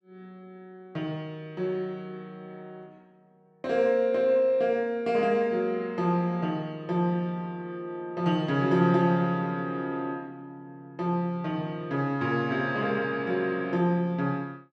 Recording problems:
none

